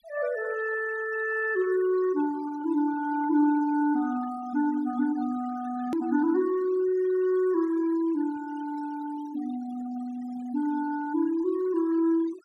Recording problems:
noise reduction artefacts; signal-to-artefact ratio 20 dB
hard cut with a click; at 6 s

